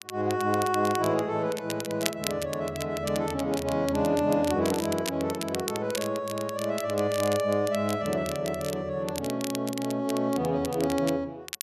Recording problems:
crackling; vinyl, SNR 11 dB

